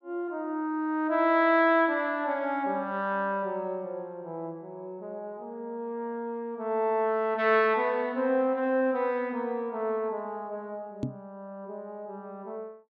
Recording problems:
microphone thump; at 11 s; peak 0 dB vs average level

